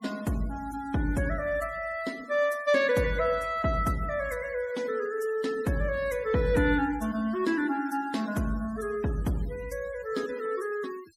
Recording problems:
noise reduction artefacts; signal-to-artefact ratio 21 dB

